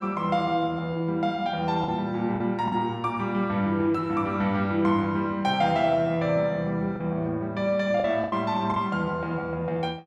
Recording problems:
lost packets; 3% of the sound replaced, filled with the last packet

